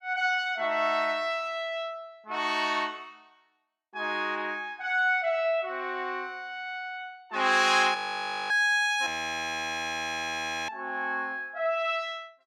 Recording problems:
audio freezing; at 8 s for 0.5 s and at 9 s for 1.5 s

